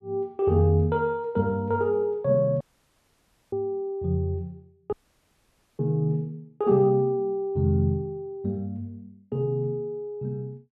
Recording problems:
dropout; at 2.5 s for 1 s and at 5 s for 1 s

